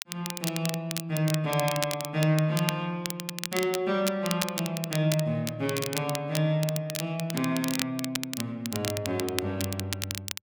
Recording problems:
crackling; vinyl, SNR 6 dB

